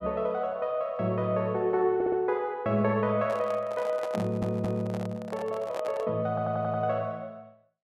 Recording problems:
audio stuttering; at 2 s, at 4 s and at 6.5 s
handling noise; from 3 to 6 s; peak -2 dB vs average level

